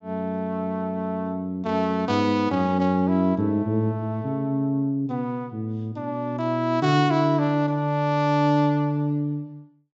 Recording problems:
treble missing; nothing above 8 kHz

